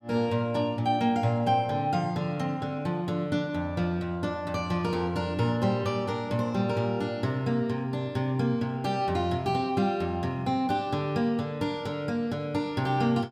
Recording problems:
none

